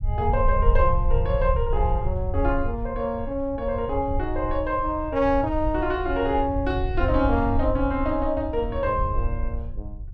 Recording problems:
low-frequency rumble; below 76 Hz, SNR 4 dB

